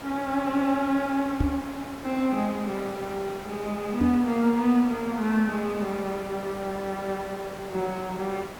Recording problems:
hiss; SNR 13 dB
microphone bump; at 1.5 s and at 4 s; peak +6 dB vs average level

